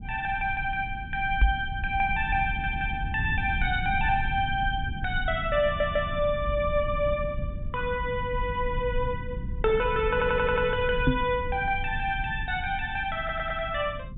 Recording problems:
treble cut off; nothing above 3.7 kHz
rumble; below 110 Hz, SNR 8 dB
microphone bump; at 1.5 s and at 11 s; peak +7 dB vs average level
audio stuttering; 4 times, first at 2.5 s

